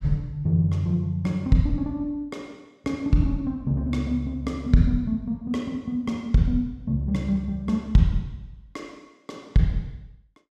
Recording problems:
none

